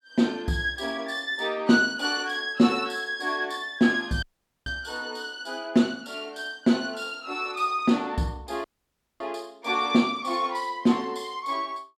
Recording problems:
dropout; at 4 s and at 8.5 s for 0.5 s

